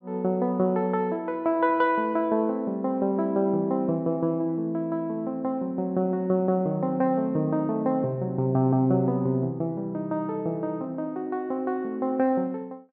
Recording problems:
none

